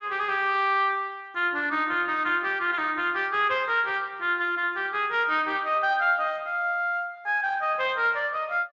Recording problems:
lossy compression; Speex, log-spectral distance 3 dB

